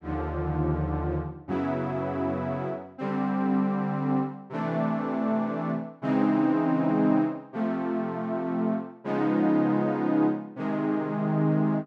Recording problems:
none

